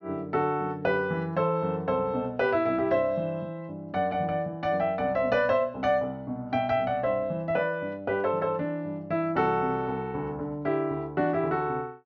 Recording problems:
low-pass filter; nothing above 6.9 kHz

